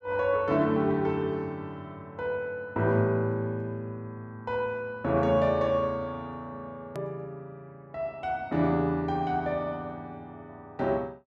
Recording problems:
edit click; at 7 s

